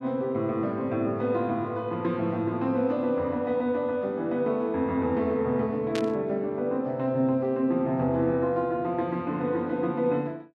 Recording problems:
static burst; at 6 s; peak -4 dB vs average level

